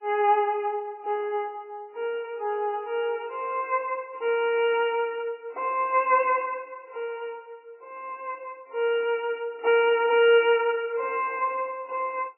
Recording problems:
codec artefacts; MP3, log-spectral distance 2 dB, nothing above 2.6 kHz

